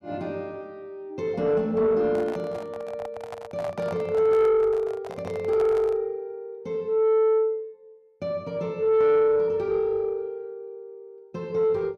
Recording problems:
distorted audio; soft clipping, signal-to-distortion ratio 10 dB
microphone handling noise; from 2 to 6 s; peak -7 dB vs average level

